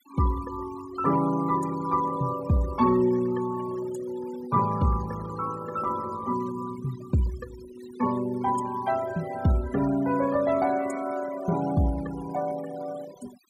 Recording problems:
denoising artefacts; signal-to-artefact ratio 18 dB

